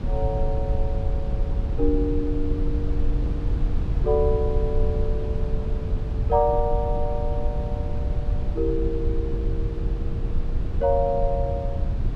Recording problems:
rumble; below 82 Hz, SNR 0 dB

